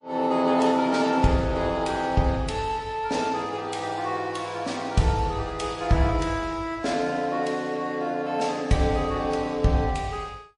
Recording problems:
codec artefacts; MP3, then MP3, log-spectral distance 2 dB, nothing above 10.1 kHz

